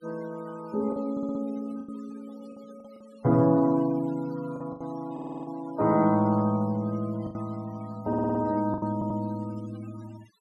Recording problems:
denoising artefacts; signal-to-artefact ratio 23 dB
lost packets; 6% of the sound replaced, filled with the last packet
stutter; 4 times, first at 1 s

